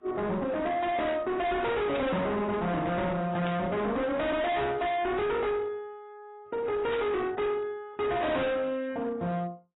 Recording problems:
lossy codec; AAC, log-spectral distance 2 dB, nothing above 3.8 kHz
distorted audio; hard clipping, signal-to-distortion ratio 6 dB
burst of static; at 2 s, at 3.5 s and at 7 s; peak -6 dB vs average level

